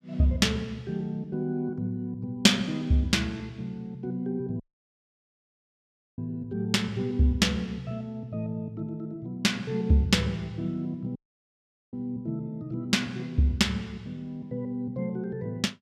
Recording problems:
audio cutting out; at 4.5 s for 1.5 s and at 11 s for 1 s

